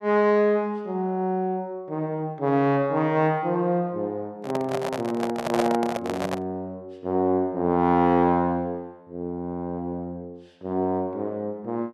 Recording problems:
handling noise; from 4.5 to 6.5 s; peak +3 dB vs average level

